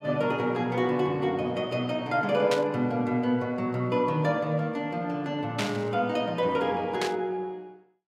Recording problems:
burst of static; at 2.5 s, at 5.5 s and at 7 s; peak +1 dB vs average level

